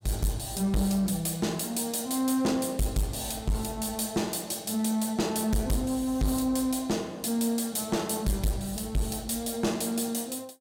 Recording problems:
distorted audio; soft clipping, signal-to-distortion ratio 8 dB

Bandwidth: 16.5 kHz